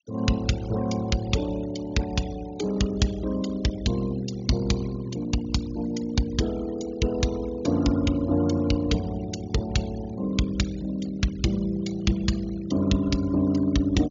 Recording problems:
treble missing; nothing above 7.1 kHz
denoising artefacts; signal-to-artefact ratio 17 dB

